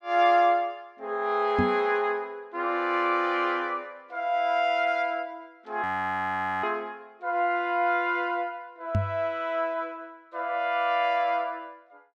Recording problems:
knock on the microphone; at 1.5 s and at 9 s; peak +4 dB vs average level
frozen audio; at 6 s for 1 s

